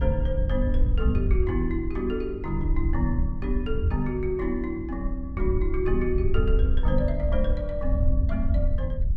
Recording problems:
wind noise; below 72 Hz, SNR -2 dB

